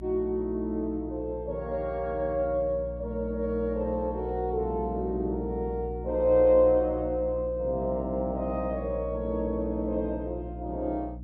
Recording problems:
hum; 60 Hz, harmonics up to 300 Hz, SNR 11 dB

